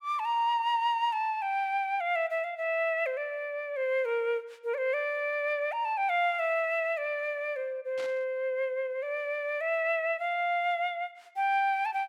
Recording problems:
burst of static; at 8 s; peak -11 dB vs average level

